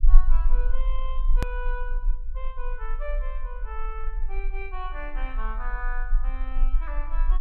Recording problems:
rumble; below 34 Hz, strongest tone 18 Hz, SNR -9 dB
click at an edit; at 1.5 s

